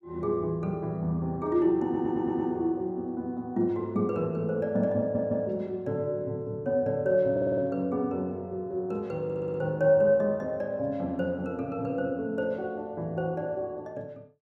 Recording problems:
audio stuttering; 4 times, first at 2 s

